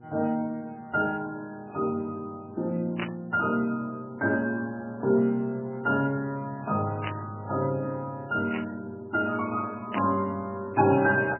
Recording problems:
lossy codec; MP3, log-spectral distance 2 dB, nothing above 2.5 kHz
electrical hum; 60 Hz, harmonics up to 960 Hz, SNR 23 dB
static burst; 4 times, first at 3 s; peak 0 dB vs average level

